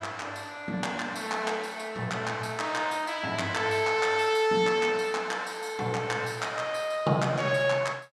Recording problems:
none

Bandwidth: 15 kHz